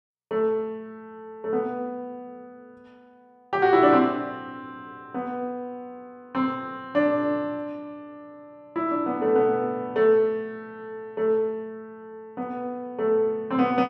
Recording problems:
none

